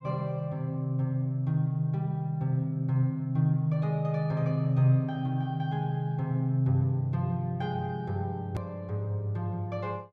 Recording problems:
click at an edit; at 8.5 s

